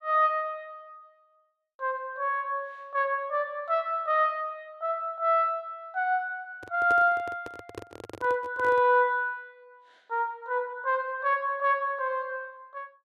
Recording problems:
handling noise; from 6.5 to 9 s; peak -6 dB vs average level

